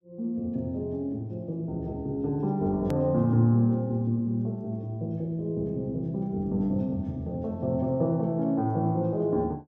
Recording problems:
edit click; at 3 s

